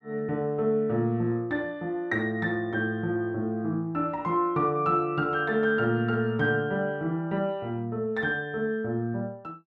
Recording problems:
none

